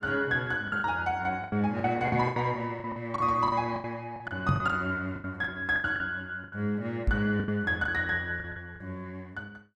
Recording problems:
lost packets; 13% of the sound replaced, filled with the last packet
microphone thump; at 2 s, at 4.5 s and at 7 s; peak +5 dB vs average level

